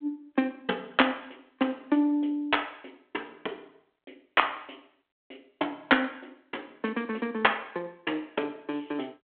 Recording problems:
telephone audio; 260 Hz to 3.5 kHz, G.726

